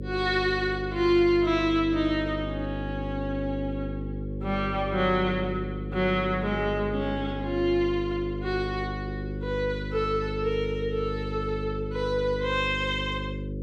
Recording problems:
hum; 50 Hz, harmonics up to 550 Hz, SNR 6 dB

